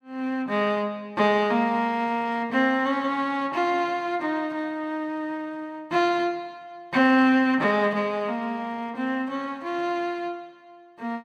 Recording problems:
none

